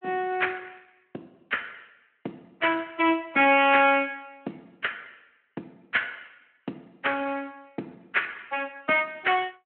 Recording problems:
phone line; 240 Hz to 3.2 kHz, Speex

